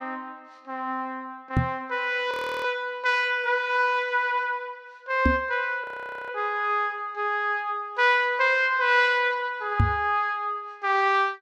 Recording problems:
microphone bump; at 1.5 s, at 5.5 s and at 10 s; peak +6 dB vs average level
frozen audio; at 2.5 s and at 6 s

